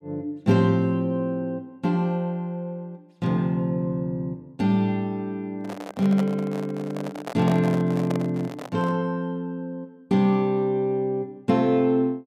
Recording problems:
microphone handling noise; from 5.5 to 9 s; peak -2 dB vs average level

